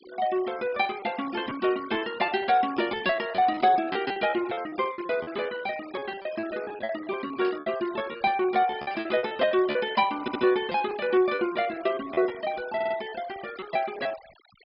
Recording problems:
treble missing; nothing above 5.5 kHz
denoising artefacts; signal-to-artefact ratio 19 dB
lost packets; 18% of the sound replaced, filled with repeated pitch periods
static burst; 4 times, first at 3.5 s; peak -13 dB vs average level
audio stuttering; at 10 s and at 13 s

